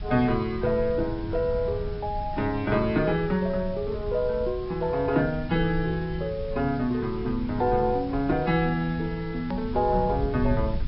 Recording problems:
treble missing; nothing above 5.3 kHz
codec artefacts; AAC, log-spectral distance 2 dB
background hiss; SNR 23 dB
low-frequency rumble; below 110 Hz, SNR 11 dB
edit click; at 9.5 s

